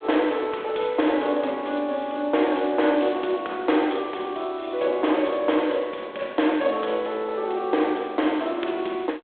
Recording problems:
phone line; 280 Hz to 3.4 kHz, G.726

